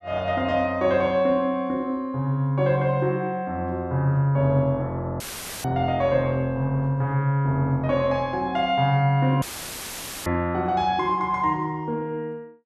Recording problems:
audio cutting out; at 5 s and at 9.5 s for 1 s; filled with static

